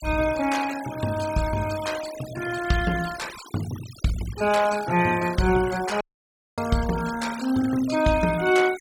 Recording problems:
denoising artefacts; signal-to-artefact ratio 14 dB
dropout; at 6 s for 0.5 s

